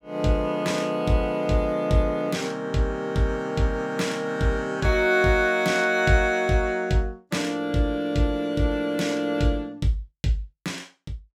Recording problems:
none

